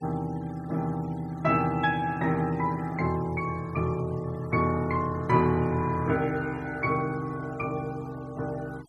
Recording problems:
denoising artefacts; signal-to-artefact ratio 23 dB

